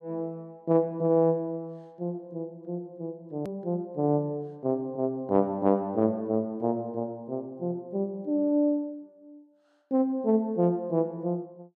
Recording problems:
edit click; at 3.5 s

